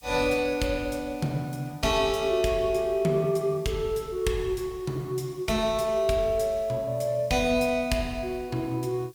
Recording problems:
background hiss; SNR 28 dB

